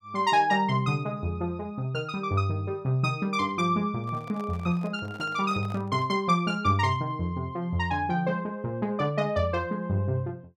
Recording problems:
handling noise; from 4 to 6 s; peak -12 dB vs average level

